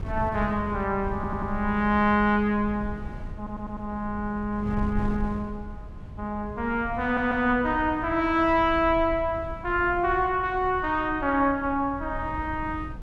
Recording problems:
wind on the microphone; below 120 Hz, SNR 12 dB
stutter; at 1 s, at 3.5 s and at 7 s

